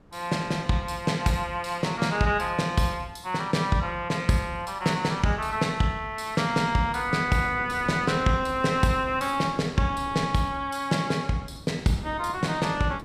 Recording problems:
wind noise; below 470 Hz, SNR 19 dB

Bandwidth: 15 kHz